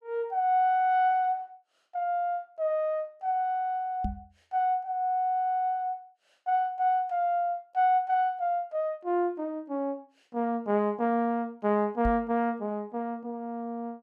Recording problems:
microphone bump; at 4 s and at 12 s; peak -1 dB vs average level

